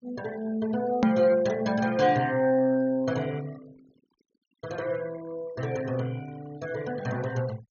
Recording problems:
treble missing; nothing above 6.6 kHz
noise reduction artefacts; signal-to-artefact ratio 22 dB
edit click; at 1 s

